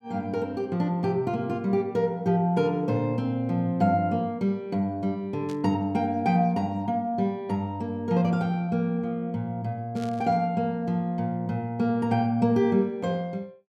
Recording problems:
static burst; at 5.5 s and at 10 s; peak -14 dB vs average level

